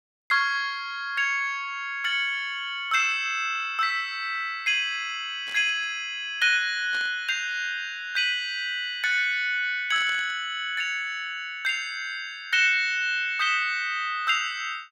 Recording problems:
static burst; at 5.5 s, at 7 s and at 10 s; peak -13 dB vs average level

